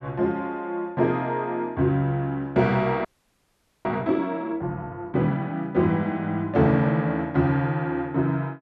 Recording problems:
audio freezing; at 3 s for 1 s

